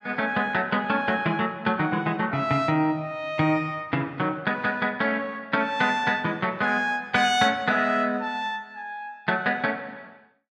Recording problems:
none

